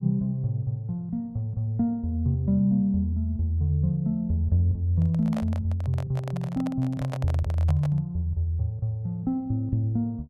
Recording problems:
microphone handling noise; from 5 to 8 s; peak -5 dB vs average level

